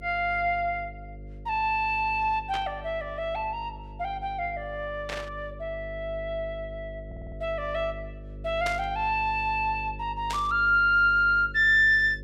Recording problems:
hum; 50 Hz, harmonics up to 550 Hz, SNR 16 dB
static burst; 4 times, first at 2.5 s; peak -5 dB vs average level
stutter; at 7 s

